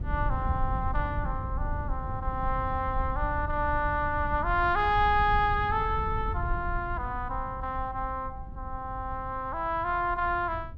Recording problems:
rumble; below 88 Hz, SNR 7 dB

